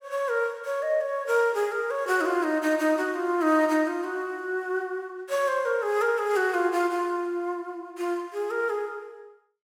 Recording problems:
none

